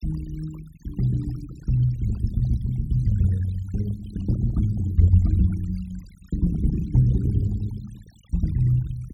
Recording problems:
denoising artefacts; signal-to-artefact ratio 23 dB

